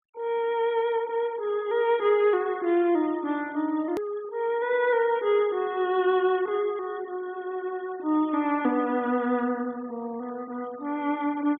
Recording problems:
low-pass filter; nothing above 4 kHz
denoising artefacts; signal-to-artefact ratio 23 dB
click at an edit; at 4 s

